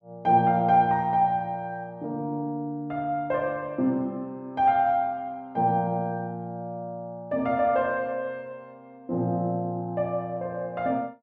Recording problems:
none

